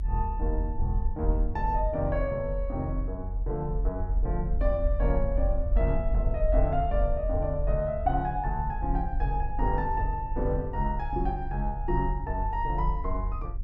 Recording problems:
low-frequency rumble; below 46 Hz, strongest tone 42 Hz, SNR 1 dB

